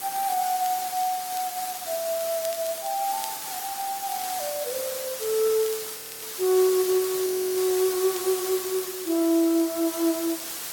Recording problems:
codec artefacts; Opus, log-spectral distance 8 dB
hiss; slope 0 dB per octave, SNR 6 dB
crackle; vinyl, SNR 21 dB
audio freezing; at 6 s and at 7.5 s

